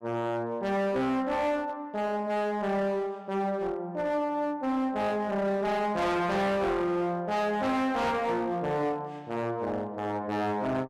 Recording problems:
distorted audio; hard clipping, uneven, signal-to-distortion ratio 7 dB

